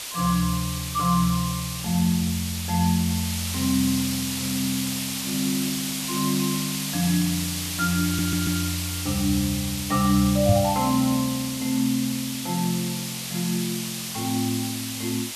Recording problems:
background hiss; slope +2 dB per octave, SNR 4 dB
stutter; at 8 s
microphone thump; at 10 s; peak +9 dB vs average level

